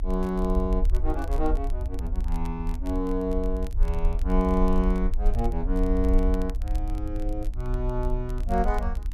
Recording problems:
hum; 60 Hz, harmonics up to 300 Hz, SNR 22 dB
rumble; below 52 Hz, strongest tone 32 Hz, SNR 0 dB
crackling; vinyl, SNR 24 dB

